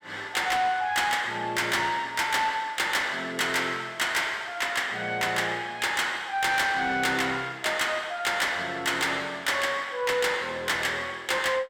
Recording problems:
distortion; soft clipping, signal-to-distortion ratio 11 dB

